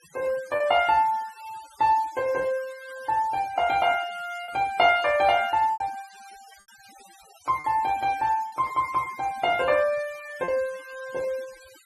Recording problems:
noise reduction artefacts; signal-to-artefact ratio 22 dB
packet loss; 3% of the sound replaced, filled with repeated pitch periods

